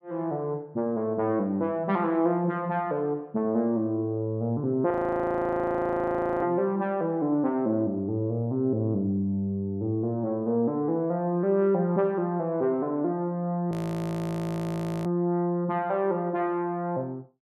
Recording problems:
frozen audio; at 5 s for 1.5 s and at 14 s for 1.5 s

